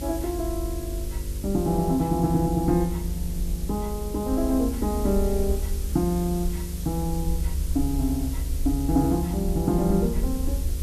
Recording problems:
electrical hum; 50 Hz, harmonics up to 550 Hz, SNR 10 dB
hiss; slope +2 dB per octave, SNR 14 dB
low-frequency rumble; below 72 Hz, SNR 6 dB

